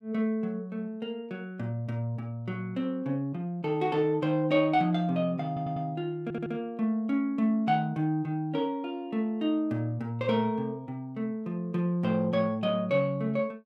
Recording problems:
audio stuttering; at 5.5 s and at 6 s

